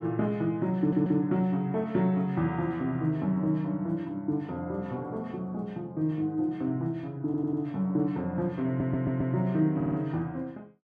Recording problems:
audio stuttering; 4 times, first at 1 s

